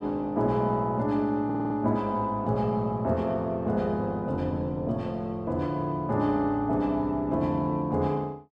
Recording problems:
stutter; at 1.5 s

